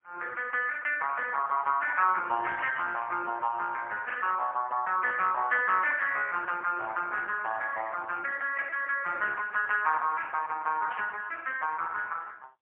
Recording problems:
telephone audio; 430 Hz to 3 kHz, AMR-NB, then MP3
static burst; 4 times, first at 2.5 s; peak -9 dB vs average level

